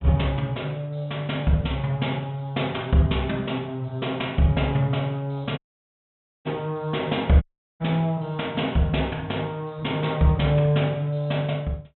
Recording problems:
low-pass filter; nothing above 3.7 kHz
dropout; at 5.5 s for 1 s and at 7.5 s

